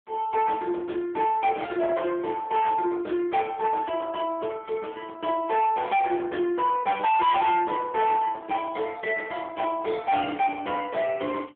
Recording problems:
telephone audio; 280 Hz to 3.5 kHz, AMR-NB
distorted audio; soft clipping, signal-to-distortion ratio 8 dB

